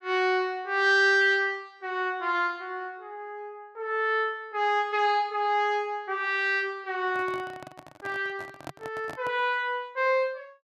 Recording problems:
handling noise; from 7 to 9.5 s; peak -8 dB vs average level

